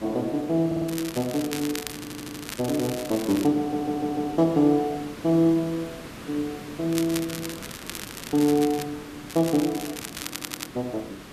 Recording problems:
hiss; SNR 15 dB
audio stuttering; 4 times, first at 0.5 s
crackling; from 0.5 to 3.5 s, from 7 to 9 s and from 9.5 to 11 s; loose cable, SNR 11 dB

